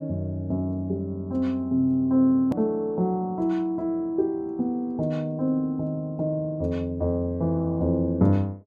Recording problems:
hard cut with a click; at 2.5 s

